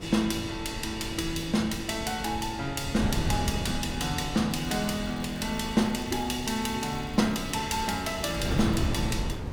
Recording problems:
wind on the microphone; below 250 Hz, SNR 7 dB
crackling; from 4.5 to 9 s; loose cable, SNR 24 dB

